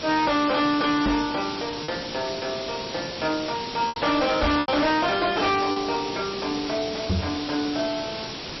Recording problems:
lossy compression; MP3, log-spectral distance 17 dB, nothing above 5.7 kHz
distorted audio; hard clipping, uneven, signal-to-distortion ratio 7 dB
hiss; SNR 7 dB
lost packets; 3% of the sound replaced, filled with repeated pitch periods
microphone thump; at 1 s, at 4.5 s and at 7 s; peak +4 dB vs average level

